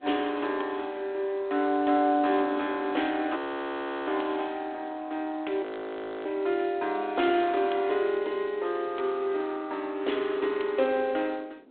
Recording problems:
telephone audio; 240 Hz to 4 kHz, G.726
wind noise; below 560 Hz, SNR 20 dB
frozen audio; at 3.5 s for 0.5 s and at 5.5 s for 0.5 s

